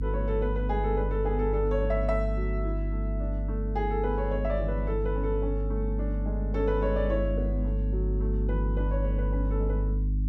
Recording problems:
hum; 50 Hz, harmonics up to 300 Hz, SNR -2 dB

